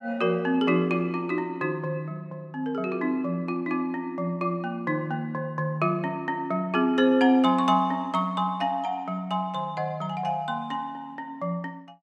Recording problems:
none

